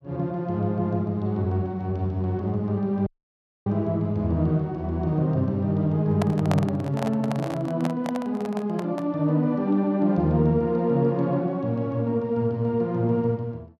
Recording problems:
audio cutting out; at 3 s for 0.5 s
handling noise; from 6 to 9 s; peak +1 dB vs average level

